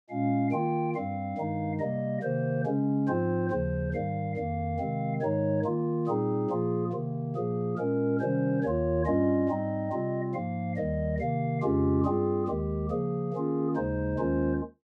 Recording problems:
none

